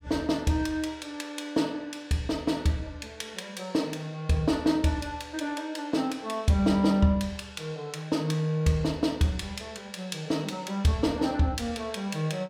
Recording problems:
none

